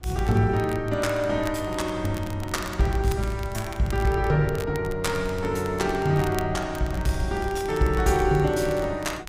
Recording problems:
rumble; below 88 Hz, SNR 16 dB
crackling; vinyl, SNR 19 dB

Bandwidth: 15.5 kHz